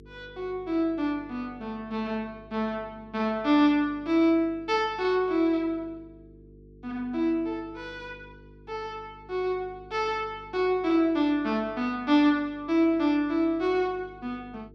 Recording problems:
hum; 50 Hz, harmonics up to 450 Hz, SNR 24 dB

